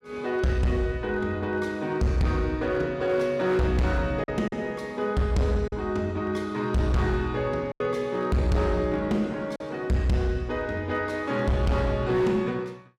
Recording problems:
distortion; hard clipping, signal-to-distortion ratio 10 dB
packet loss; 1.9% of the sound replaced, filled with silence

